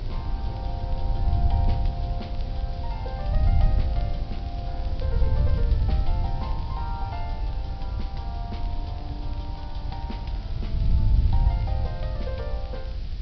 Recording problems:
treble cut off; nothing above 5.5 kHz
background hiss; SNR 12 dB
low-frequency rumble; below 72 Hz, SNR -1 dB
wind on the microphone; below 88 Hz, SNR -10 dB
crackle; vinyl, SNR 21 dB

